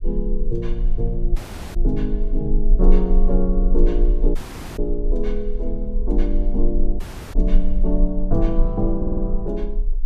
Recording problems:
low-frequency rumble; below 34 Hz, strongest tone 22 Hz, SNR -1 dB
audio cutting out; at 1.5 s, at 4.5 s and at 7 s
audio stuttering; at 9 s

